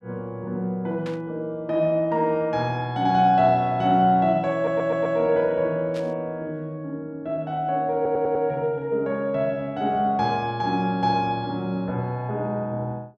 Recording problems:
static burst; at 1 s and at 6 s; peak -12 dB vs average level
stutter; at 4.5 s and at 8 s

